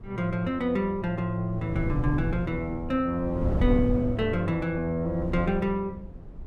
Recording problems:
wind noise; below 160 Hz, SNR 6 dB

